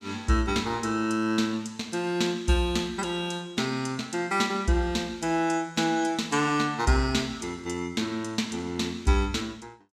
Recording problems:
none

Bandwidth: 17 kHz